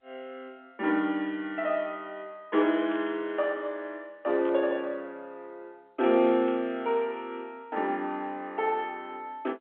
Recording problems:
phone line; 240 Hz to 3.5 kHz, G.711
burst of static; at 3 s, at 4.5 s and at 6.5 s; peak -12 dB vs average level

